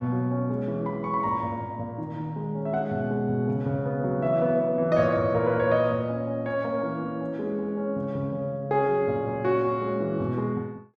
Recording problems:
none

